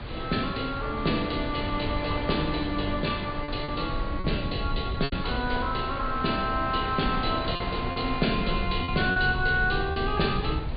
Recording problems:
treble cut off; nothing above 4.7 kHz
hum; 60 Hz, harmonics up to 960 Hz, SNR 20 dB
low-frequency rumble; below 84 Hz, SNR 9 dB
wind noise; below 1.8 kHz, SNR 11 dB
packet loss; 4% of the sound replaced, filled with repeated pitch periods

